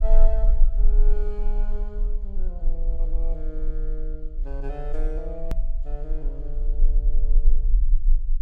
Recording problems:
rumble; below 34 Hz, strongest tone 20 Hz, SNR -12 dB
click at an edit; at 5.5 s

